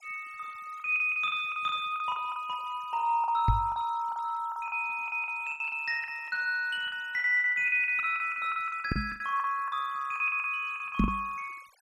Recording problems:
denoising artefacts; signal-to-artefact ratio 27 dB
packet loss; 15% of the sound replaced, filled with the last packet
microphone thump; at 3.5 s, at 9 s and at 11 s; peak +6 dB vs average level

